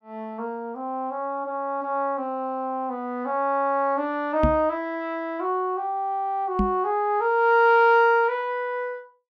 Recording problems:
knock on the microphone; at 4.5 s and at 6.5 s; peak +4 dB vs average level

